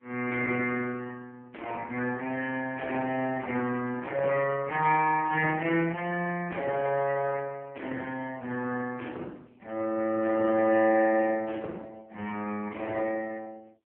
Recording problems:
phone line; 280 Hz to 2.8 kHz, AMR-NB

